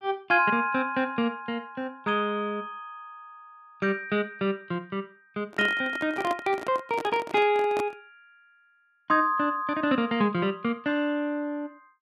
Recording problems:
microphone handling noise; from 5.5 to 8 s; peak -3 dB vs average level

